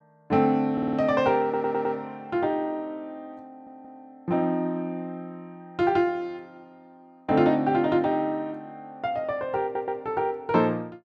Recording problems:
stutter; 4 times, first at 0.5 s

